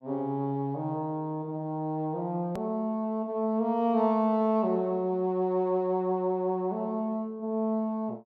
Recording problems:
edit click; at 2.5 s

